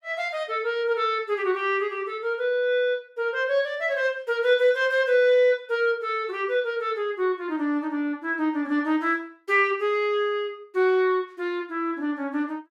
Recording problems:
none

